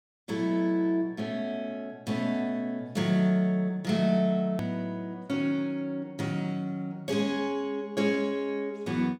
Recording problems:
edit click; at 4.5 s

